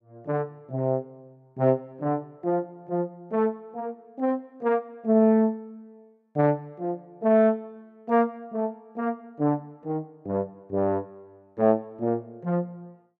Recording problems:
none

